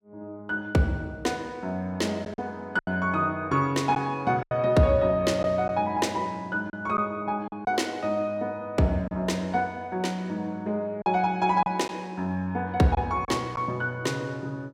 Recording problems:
lost packets; 3% of the sound replaced, filled with silence

